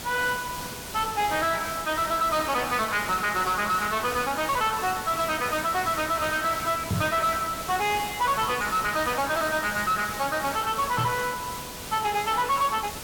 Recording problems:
codec artefacts; Speex, log-spectral distance 4 dB
distorted audio; soft clipping, signal-to-distortion ratio 7 dB
hiss; slope -2 dB per octave, SNR 9 dB
knock on the microphone; at 7 s and at 11 s; peak +2 dB vs average level

